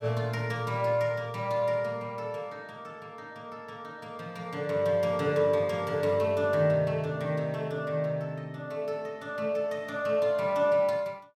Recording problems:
none

